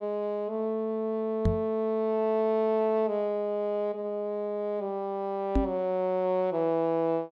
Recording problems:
knock on the microphone; at 1.5 s and at 5.5 s; peak +5 dB vs average level

